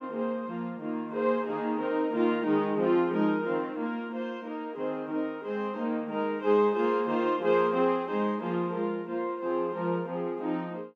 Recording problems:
none

